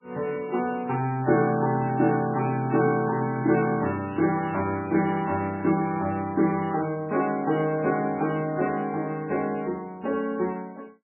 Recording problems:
codec artefacts; MP3, log-spectral distance 3 dB, nothing above 2.4 kHz
burst of static; at 4 s; peak -17 dB vs average level

